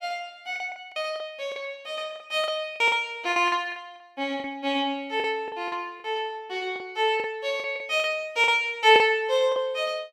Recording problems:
packet loss; 11% of the sound replaced, filled with the last packet

